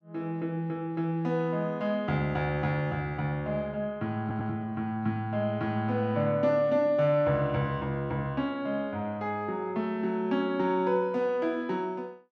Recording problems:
stutter; at 4 s

